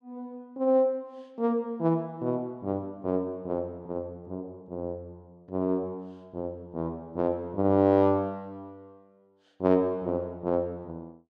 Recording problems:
none

